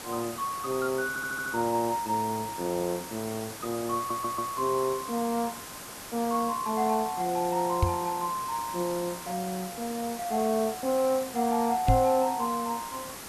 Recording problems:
hiss; slope -3 dB per octave, SNR 10 dB
audio stuttering; at 1 s and at 4 s
microphone thump; at 8 s and at 12 s; peak +8 dB vs average level

